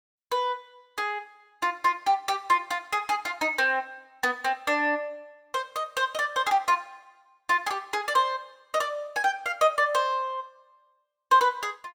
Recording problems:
none

